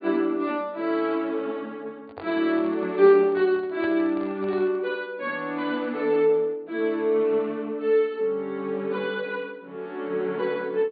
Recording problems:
low-pass filter; nothing above 4.7 kHz
microphone handling noise; from 2 to 5 s; peak -11 dB vs average level

